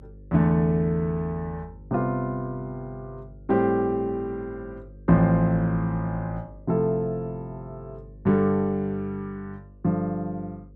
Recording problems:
electrical hum; 50 Hz, harmonics up to 550 Hz, SNR 22 dB

